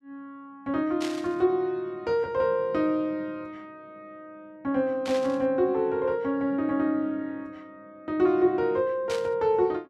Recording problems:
static burst; at 1 s, at 5 s and at 9 s; peak -6 dB vs average level

